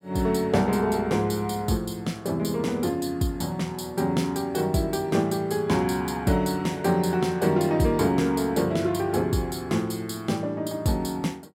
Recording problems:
none

